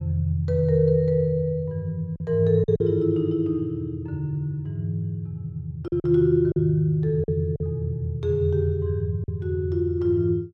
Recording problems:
packet loss; 3% of the sound replaced, filled with silence

